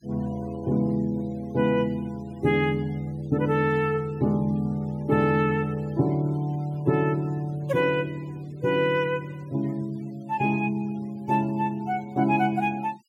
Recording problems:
noise reduction artefacts; signal-to-artefact ratio 27 dB

